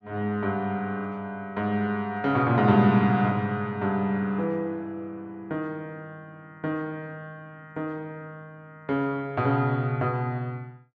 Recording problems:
none

